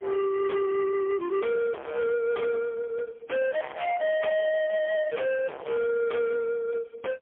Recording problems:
telephone audio; 320 Hz to 2.2 kHz, AMR-NB, then MP3
distorted audio; soft clipping, signal-to-distortion ratio 5 dB

